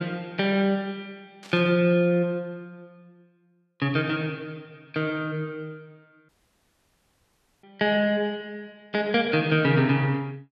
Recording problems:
static burst; at 1.5 s; peak -17 dB vs average level
dropout; at 6.5 s for 1.5 s

